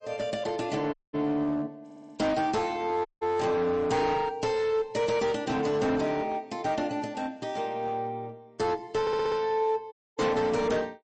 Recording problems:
codec artefacts; MP3, log-spectral distance 2 dB, nothing above 8.2 kHz
distorted audio; hard clipping, uneven, signal-to-distortion ratio 10 dB
dropout; at 1 s, at 3 s and at 10 s
audio stuttering; at 2 s and at 9 s

